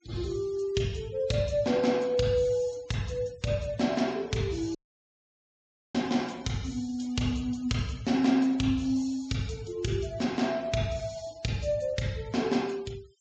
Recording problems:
treble cut off; nothing above 8 kHz
denoising artefacts; signal-to-artefact ratio 24 dB
dropout; at 5 s for 1 s

